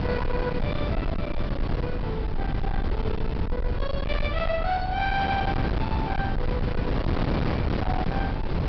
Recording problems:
treble missing; nothing above 5.5 kHz
distorted audio; hard clipping, signal-to-distortion ratio 8 dB
rumble; below 72 Hz, SNR 2 dB
wind on the microphone; below 390 Hz, SNR -2 dB

